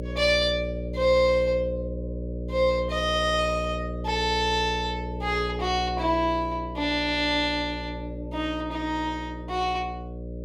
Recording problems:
electrical hum; 60 Hz, harmonics up to 600 Hz, SNR 9 dB

